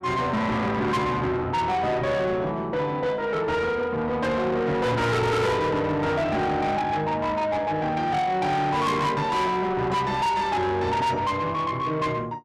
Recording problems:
distortion; soft clipping, signal-to-distortion ratio 7 dB

